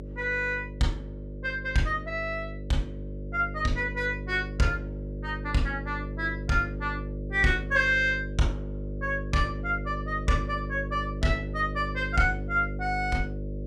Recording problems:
hum; 50 Hz, harmonics up to 600 Hz, SNR 7 dB

